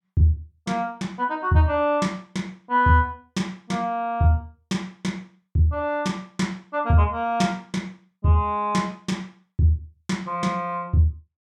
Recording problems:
none

